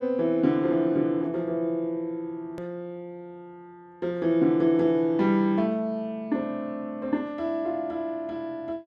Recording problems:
hard cut with a click; at 2.5 s

